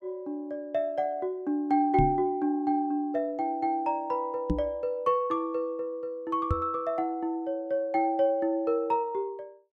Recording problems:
knock on the microphone; at 2 s, at 4.5 s and at 6.5 s; peak +5 dB vs average level

